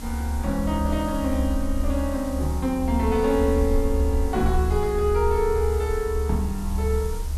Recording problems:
hiss; SNR 16 dB
low-frequency rumble; below 72 Hz, strongest tone 72 Hz, SNR 3 dB

